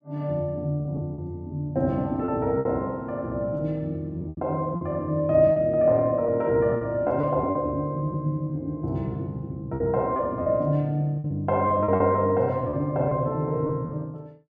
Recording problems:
lost packets; 7% of the sound replaced, filled with repeated pitch periods

